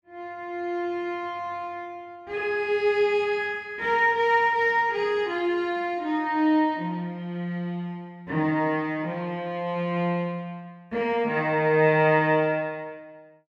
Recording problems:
none

